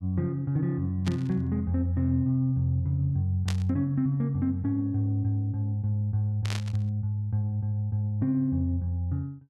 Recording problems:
static burst; at 1 s, at 3.5 s and at 6.5 s; peak -4 dB vs average level

